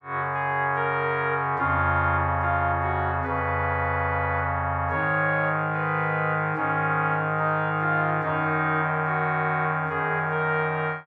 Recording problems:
none

